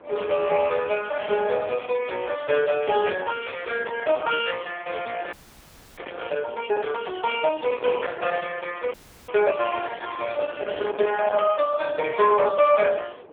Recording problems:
telephone audio; 300 Hz to 3.3 kHz, AMR-NB
distortion; soft clipping, signal-to-distortion ratio 12 dB
wind noise; below 1.1 kHz, SNR 17 dB
frozen audio; at 5.5 s for 0.5 s and at 9 s

